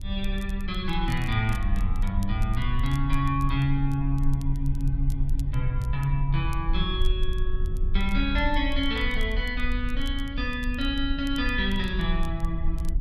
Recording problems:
rumble; below 50 Hz, strongest tone 20 Hz, SNR 2 dB
crackle; vinyl, SNR 24 dB

